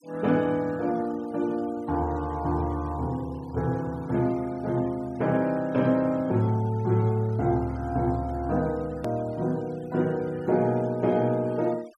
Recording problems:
noise reduction artefacts; signal-to-artefact ratio 25 dB
hard cut with a click; at 9 s

